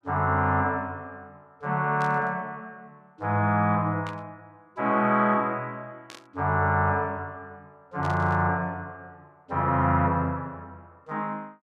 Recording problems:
burst of static; 4 times, first at 2 s; peak -13 dB vs average level

